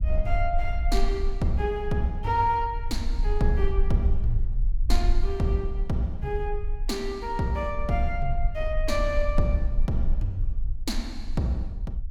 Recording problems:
low-frequency rumble; below 44 Hz, strongest tone 18 Hz, SNR 2 dB

